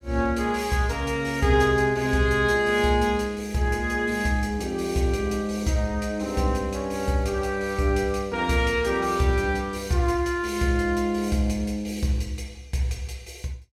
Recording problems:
none

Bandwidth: 16 kHz